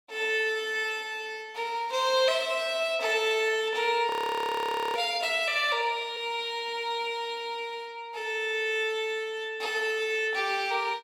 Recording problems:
audio freezing; at 4 s for 1 s

